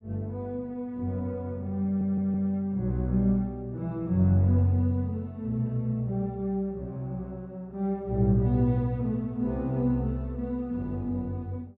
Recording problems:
audio stuttering; at 2 s

